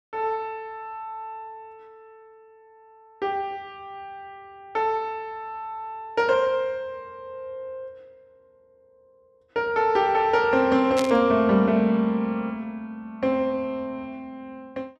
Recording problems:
static burst; at 11 s; peak -2 dB vs average level

